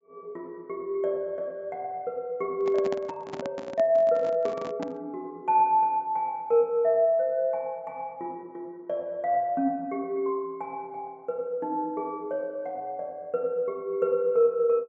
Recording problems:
low-pass filter; nothing above 8 kHz
microphone handling noise; from 2.5 to 5 s; peak -4 dB vs average level

